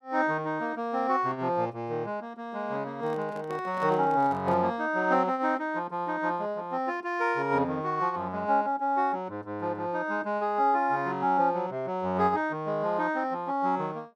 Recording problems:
microphone handling noise; from 3 to 4.5 s; peak -10 dB vs average level

